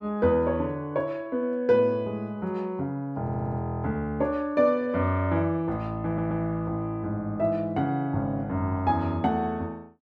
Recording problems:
audio stuttering; at 3 s and at 6 s

